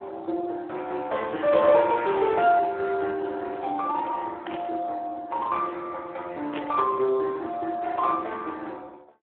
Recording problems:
phone line; 260 Hz to 2.8 kHz, Speex
static burst; at 1.5 s, at 4.5 s and at 6.5 s; peak -4 dB vs average level

